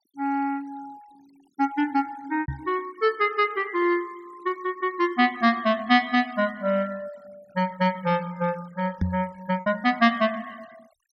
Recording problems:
noise reduction artefacts; signal-to-artefact ratio 26 dB
packet loss; 1.4% of the sound replaced, filled with repeated pitch periods
microphone thump; at 2.5 s and at 9 s; peak +3 dB vs average level

